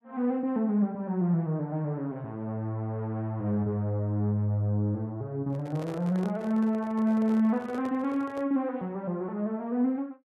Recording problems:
microphone handling noise; from 5.5 to 8.5 s; peak -9 dB vs average level

